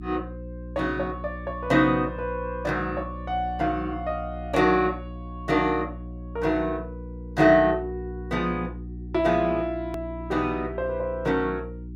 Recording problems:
hum; 60 Hz, harmonics up to 360 Hz, SNR 12 dB
hard cut with a click; at 10 s

